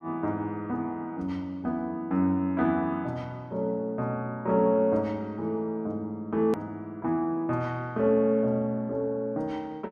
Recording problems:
click at an edit; at 6.5 s

